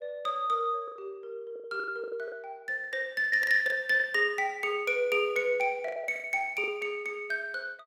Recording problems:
packet loss; 12% of the sound replaced, filled with the last packet

